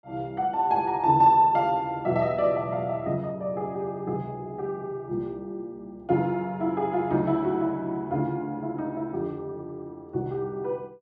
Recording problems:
none

